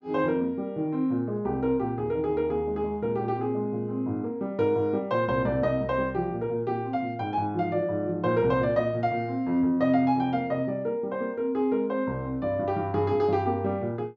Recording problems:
treble missing; nothing above 7.8 kHz

